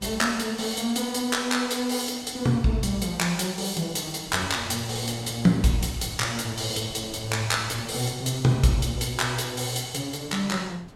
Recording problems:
wind on the microphone; below 580 Hz, SNR 22 dB

